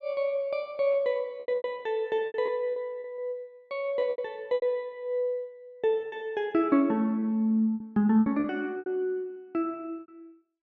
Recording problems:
lost packets; 10% of the sound replaced, filled with repeated pitch periods

